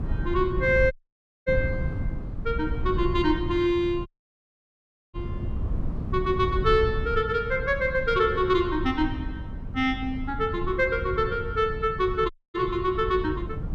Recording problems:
wind noise; below 130 Hz, SNR 7 dB
audio cutting out; at 1 s for 0.5 s, at 4 s for 1 s and at 12 s

